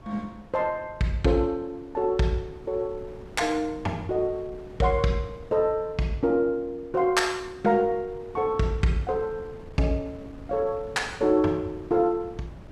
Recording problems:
wind on the microphone; below 380 Hz, SNR 19 dB

